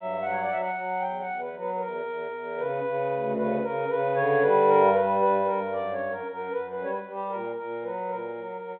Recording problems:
phone line; 240 Hz to 3.9 kHz, G.726

